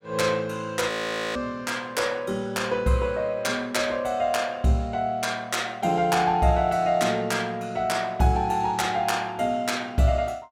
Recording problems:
audio freezing; at 1 s

